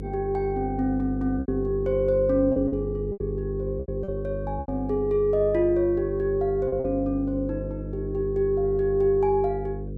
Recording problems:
electrical hum; 50 Hz, harmonics up to 500 Hz, SNR 8 dB
lost packets; 5% of the sound replaced, filled with repeated pitch periods

